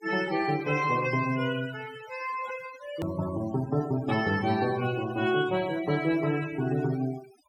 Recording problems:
noise reduction artefacts; signal-to-artefact ratio 15 dB
hard cut with a click; at 3 s

